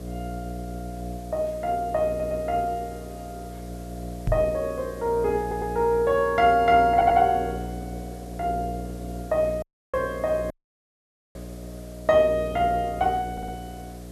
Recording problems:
hum; 60 Hz, harmonics up to 720 Hz, SNR 13 dB
hiss; slope -2 dB per octave, SNR 26 dB
audio stuttering; 4 times, first at 2 s
microphone thump; at 4.5 s; peak +1 dB vs average level
dropout; at 9.5 s and at 11 s for 1 s

